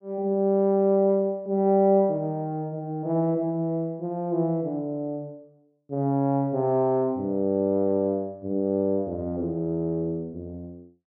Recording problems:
none

